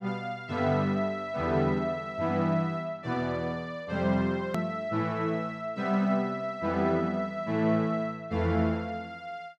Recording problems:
click at an edit; at 4.5 s

